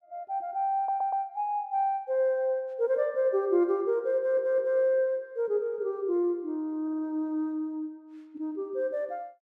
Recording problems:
audio stuttering; at 1 s, at 4 s and at 7 s

